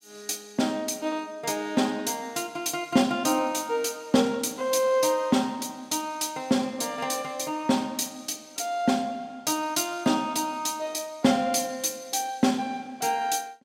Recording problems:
none

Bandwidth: 16 kHz